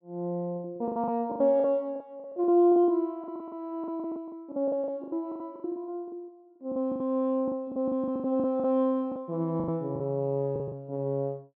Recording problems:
packet loss; 19% of the sound replaced, filled with the last packet

